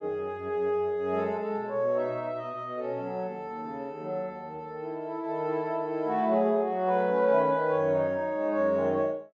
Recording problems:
none

